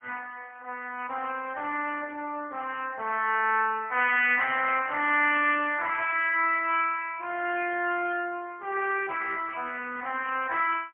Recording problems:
phone line; 260 Hz to 3.1 kHz, AMR-NB, then MP3

